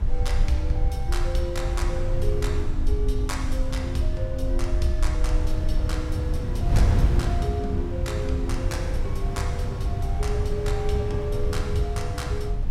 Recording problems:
low-frequency rumble; below 52 Hz, strongest tone 22 Hz, SNR 1 dB
wind on the microphone; below 110 Hz, SNR -3 dB

